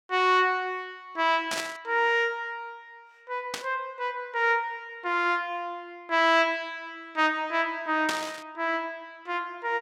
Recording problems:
static burst; at 1.5 s, at 3.5 s and at 8 s; peak 0 dB vs average level

